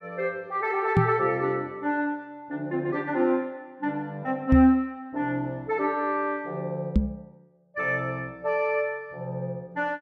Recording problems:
knock on the microphone; at 1 s, at 4.5 s and at 7 s; peak +9 dB vs average level

